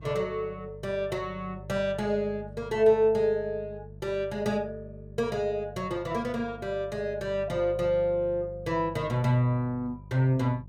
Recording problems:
hum; 50 Hz, harmonics up to 400 Hz, SNR 17 dB

